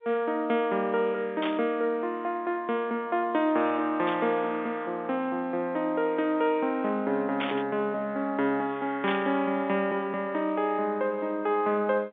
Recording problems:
phone line; 220 Hz to 3.8 kHz, G.711
static burst; 4 times, first at 1.5 s; peak -1 dB vs average level

